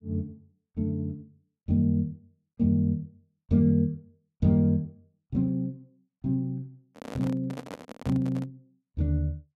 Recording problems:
microphone handling noise; from 7 to 8.5 s; peak -7 dB vs average level

